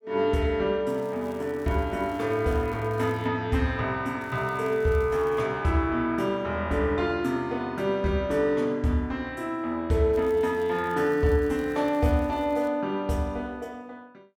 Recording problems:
crackling; from 1 to 3.5 s, from 4 to 5.5 s and from 10 to 13 s; loose cable, SNR 29 dB

